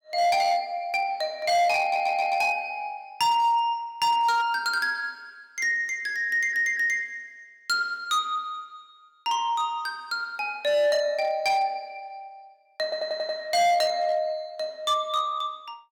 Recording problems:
distortion; hard clipping, signal-to-distortion ratio 12 dB
audio stuttering; at 2 s, at 6.5 s and at 13 s

